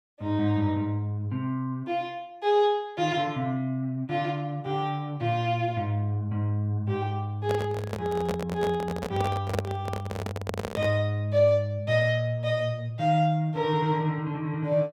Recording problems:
microphone handling noise; from 7.5 to 11 s; peak +2 dB vs average level

